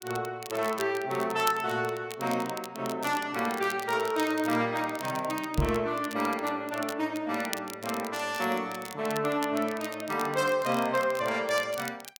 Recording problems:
crackling; vinyl, SNR 14 dB
knock on the microphone; at 5.5 s; peak +7 dB vs average level

